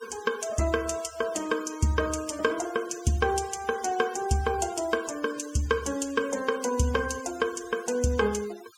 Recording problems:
denoising artefacts; signal-to-artefact ratio 18 dB

